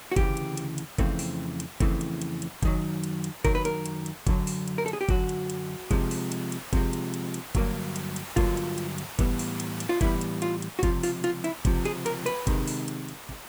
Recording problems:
background hiss; SNR 11 dB

